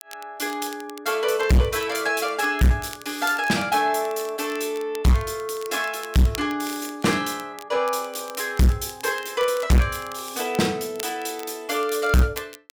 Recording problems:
distorted audio; hard clipping, uneven, signal-to-distortion ratio 6 dB
crackling; vinyl, SNR 19 dB

